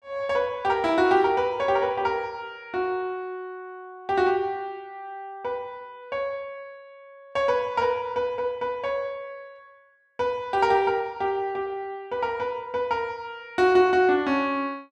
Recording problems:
none

